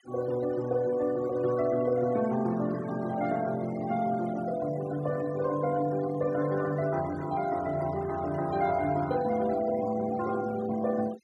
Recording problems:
noise reduction artefacts; signal-to-artefact ratio 17 dB

